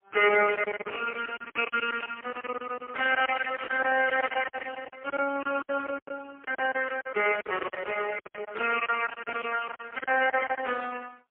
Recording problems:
phone line; 340 Hz to 3.1 kHz, AMR-NB, then MP3
packet loss; 15% of the sound replaced, filled with silence
static burst; at 3.5 s; peak -5 dB vs average level

